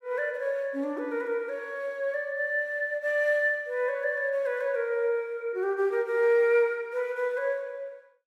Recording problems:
none

